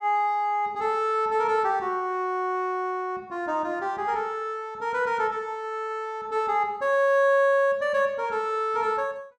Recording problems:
none

